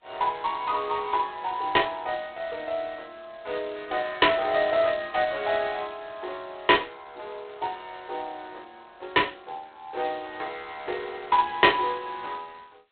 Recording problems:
phone line; 320 Hz to 3.9 kHz, G.726

